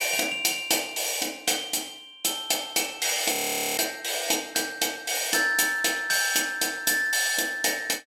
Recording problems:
audio freezing; at 3.5 s

